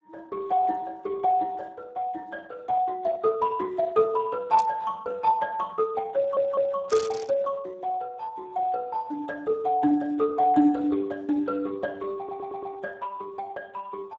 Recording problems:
codec artefacts; Speex, log-spectral distance 3 dB
burst of static; at 4.5 s and at 7 s; peak -5 dB vs average level
audio stuttering; at 6 s and at 12 s

